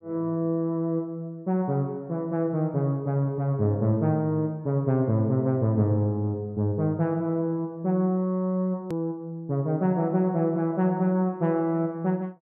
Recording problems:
edit click; at 9 s

